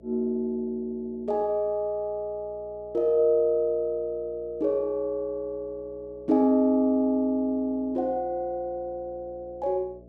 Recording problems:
electrical hum; 60 Hz, harmonics up to 660 Hz, SNR 25 dB

